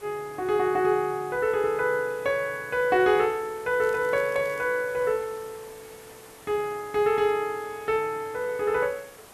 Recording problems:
hiss; slope -4 dB per octave, SNR 22 dB
crackle; at 4 s; loose cable, SNR 27 dB

